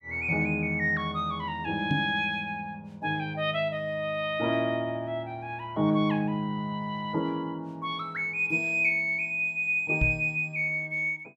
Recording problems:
microphone thump; at 2 s and at 10 s; peak +3 dB vs average level

